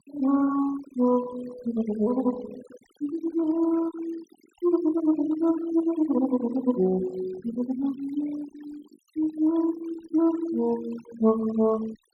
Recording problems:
noise reduction artefacts; signal-to-artefact ratio 19 dB

